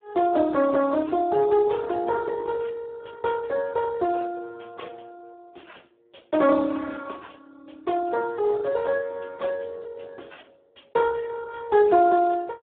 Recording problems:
telephone audio; 260 Hz to 2.1 kHz, Speex

